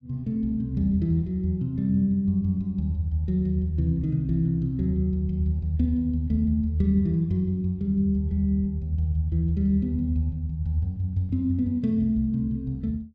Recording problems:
none

